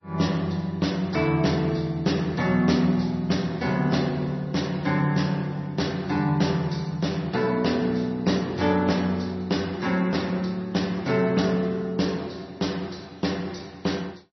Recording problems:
lossy codec; MP3, log-spectral distance 4 dB, nothing above 5.8 kHz

